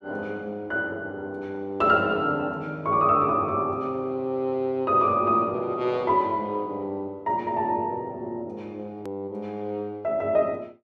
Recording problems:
edit click; at 9 s

